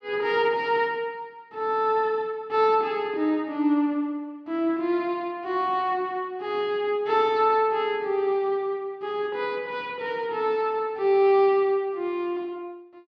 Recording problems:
none

